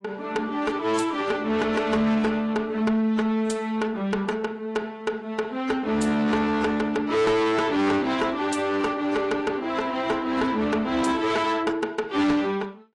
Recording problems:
lossy codec; AAC, log-spectral distance 2 dB, nothing above 10.4 kHz
distorted audio; soft clipping, signal-to-distortion ratio 8 dB

